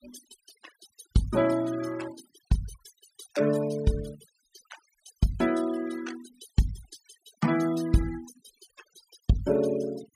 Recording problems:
denoising artefacts; signal-to-artefact ratio 16 dB

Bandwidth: 15 kHz